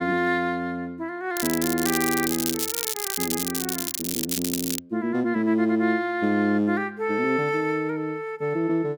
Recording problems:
crackle; from 1.5 to 5 s; loose cable, SNR 2 dB

